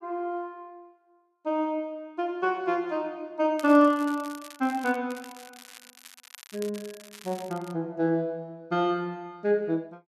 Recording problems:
crackling; from 3.5 to 5 s and from 5 to 7.5 s; loose cable, SNR 19 dB

